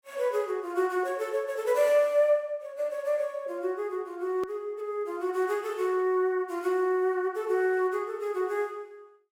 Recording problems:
edit click; at 4.5 s

